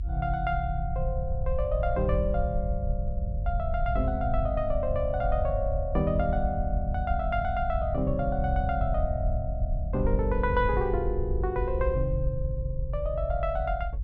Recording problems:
low-frequency rumble; below 72 Hz, SNR 2 dB

